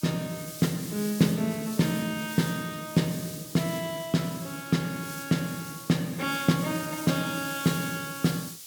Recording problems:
hiss; SNR 11 dB

